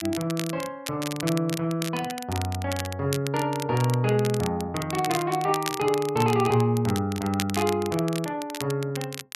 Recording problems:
crackle; vinyl, SNR 10 dB

